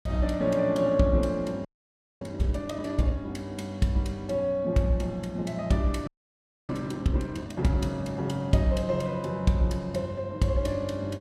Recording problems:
audio freezing; at 1.5 s for 0.5 s and at 6 s for 0.5 s

